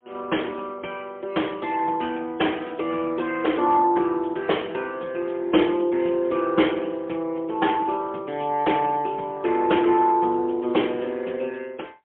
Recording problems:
telephone audio; 220 Hz to 3.3 kHz, AMR-NB, then MP3

